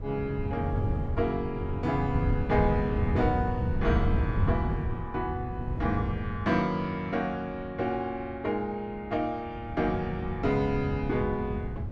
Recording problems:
wind noise; below 130 Hz, SNR 2 dB

